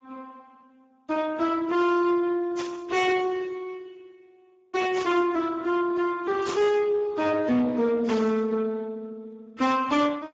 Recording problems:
lossy compression; AAC, then Speex, log-spectral distance 3 dB, nothing above 7.3 kHz
distorted audio; soft clipping, signal-to-distortion ratio 11 dB
burst of static; 4 times, first at 2.5 s; peak -7 dB vs average level

